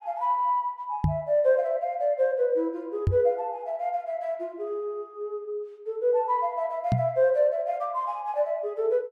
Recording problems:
microphone bump; at 1 s, at 3 s and at 7 s; peak +6 dB vs average level

